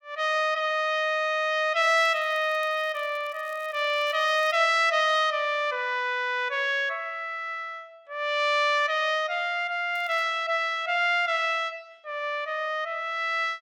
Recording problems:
crackle; from 2 to 4.5 s and at 10 s; loose cable, SNR 29 dB

